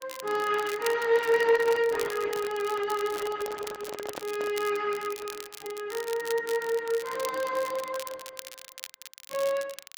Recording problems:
lossy codec; Opus, log-spectral distance 4 dB
crackle; vinyl, SNR 14 dB
handling noise; from 3 to 4.5 s; peak -4 dB vs average level

